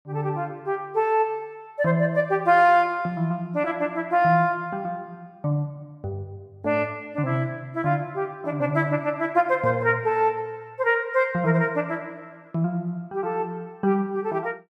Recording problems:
none

